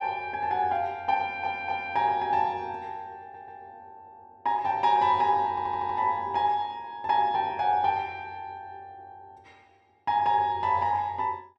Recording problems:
stutter; at 1 s, at 3 s and at 5.5 s

